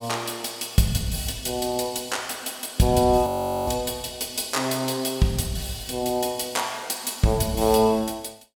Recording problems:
crackling; from 0.5 to 2 s and from 6 to 8 s; loose cable, SNR 29 dB
frozen audio; at 3.5 s

